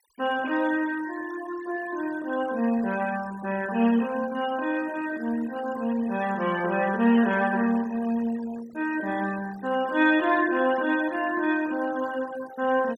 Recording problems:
noise reduction artefacts; signal-to-artefact ratio 18 dB

